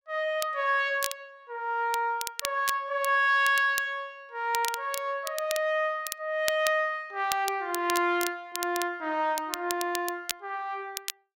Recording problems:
crackling; vinyl, SNR 9 dB

